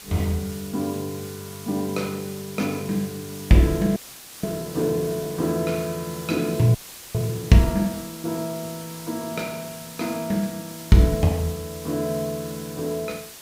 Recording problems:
hiss; slope 0 dB per octave, SNR 14 dB
frozen audio; at 4 s and at 7 s

